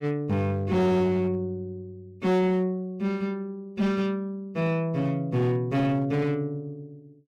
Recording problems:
distorted audio; hard clipping, signal-to-distortion ratio 11 dB

